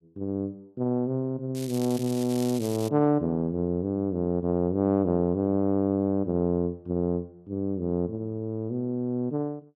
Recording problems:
crackling; from 1.5 to 3 s; loose cable, SNR 14 dB

